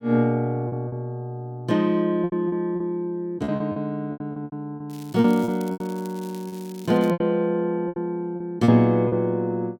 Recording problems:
packet loss; 11% of the sound replaced, filled with repeated pitch periods
crackle; from 5 to 7 s; loose cable, SNR 23 dB

